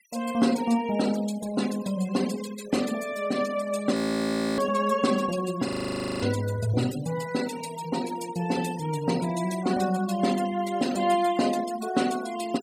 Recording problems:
denoising artefacts; signal-to-artefact ratio 14 dB
audio freezing; at 4 s for 0.5 s and at 5.5 s for 0.5 s

